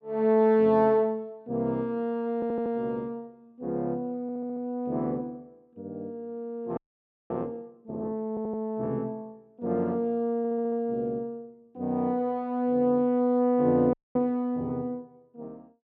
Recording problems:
audio stuttering; 4 times, first at 2.5 s
audio freezing; at 7 s for 0.5 s and at 14 s

